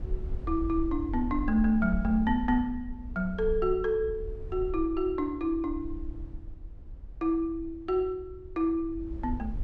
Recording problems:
rumble; below 64 Hz, SNR 11 dB

